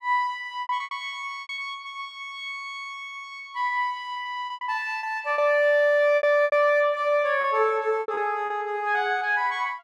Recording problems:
packet loss; 10% of the sound replaced, filled with repeated pitch periods

